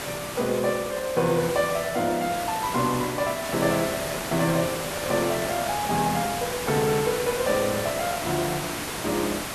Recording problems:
hiss; slope -3 dB per octave, SNR 5 dB
microphone handling noise; from 4 to 6 s; peak -7 dB vs average level

